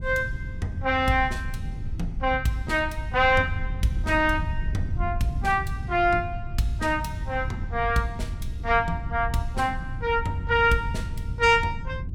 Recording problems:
wind noise; below 100 Hz, SNR 8 dB

